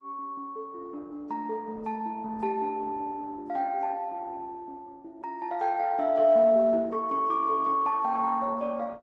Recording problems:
lossy compression; Opus, then AAC, log-spectral distance 2 dB

